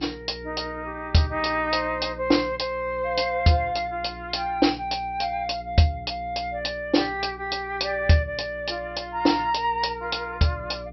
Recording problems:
treble missing; nothing above 5.7 kHz
hum; 60 Hz, harmonics up to 420 Hz, SNR 19 dB

